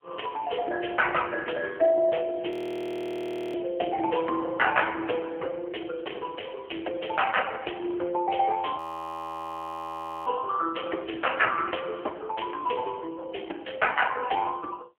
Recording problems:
telephone audio; 280 Hz to 3.1 kHz, AMR-NB
audio freezing; at 2.5 s for 1 s and at 9 s for 1.5 s

